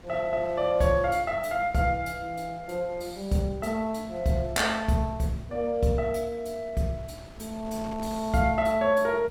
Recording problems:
wind on the microphone; below 740 Hz, SNR 21 dB

